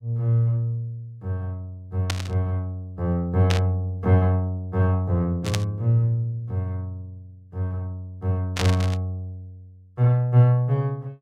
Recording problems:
burst of static; 4 times, first at 2 s; peak +1 dB vs average level

